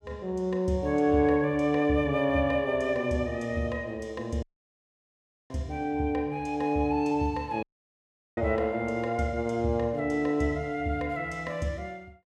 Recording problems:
audio cutting out; at 4.5 s for 1 s and at 7.5 s for 0.5 s

